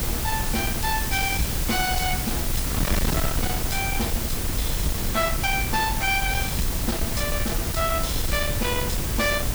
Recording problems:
distortion; hard clipping, signal-to-distortion ratio 11 dB
hiss; slope +3 dB per octave, SNR 2 dB
wind noise; below 200 Hz, SNR 2 dB

